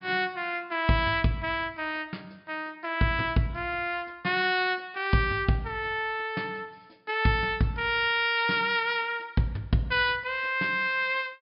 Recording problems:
treble missing; nothing above 5.5 kHz

